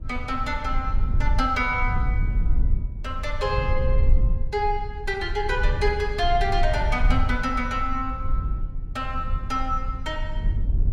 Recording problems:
rumble; below 64 Hz, SNR 1 dB

